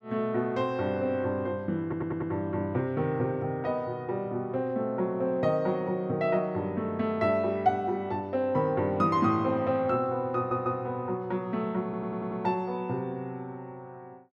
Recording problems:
stutter; at 2 s, at 10 s and at 12 s

